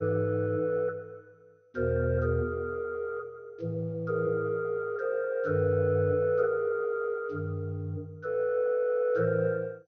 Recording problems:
codec artefacts; MP2, log-spectral distance 2 dB

